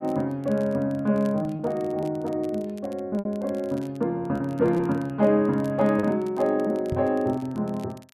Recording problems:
crackle; vinyl, SNR 29 dB
packet loss; 5% of the sound replaced, filled with repeated pitch periods
microphone thump; at 7 s; peak -1 dB vs average level

